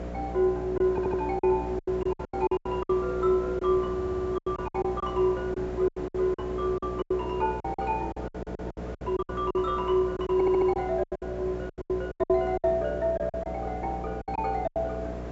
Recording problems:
treble missing; nothing above 8 kHz
electrical hum; 60 Hz, harmonics up to 720 Hz, SNR 10 dB
background hiss; slope -8 dB per octave, SNR 15 dB
lost packets; 16% of the sound replaced, filled with silence
audio stuttering; 4 times, first at 1 s

